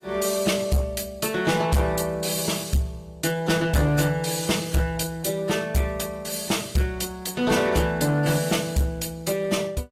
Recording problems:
lossy codec; AAC, log-spectral distance 4 dB
distortion; hard clipping, uneven, signal-to-distortion ratio 11 dB

